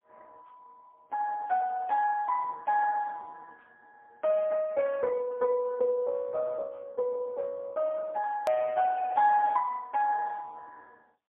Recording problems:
telephone audio; 410 Hz to 2.5 kHz, AMR-NB, then MP3
click at an edit; at 8.5 s

